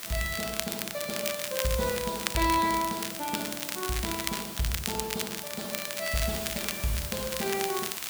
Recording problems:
background hiss; slope 0 dB per octave, SNR 5 dB
crackling; vinyl, SNR 3 dB

